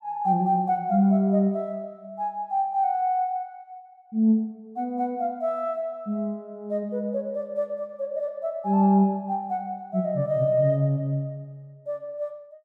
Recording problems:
none

